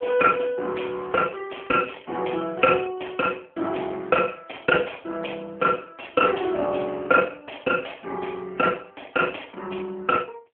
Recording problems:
phone line; 220 Hz to 3.3 kHz, AMR-NB
crackling; from 1 to 3 s; loose cable, SNR 28 dB

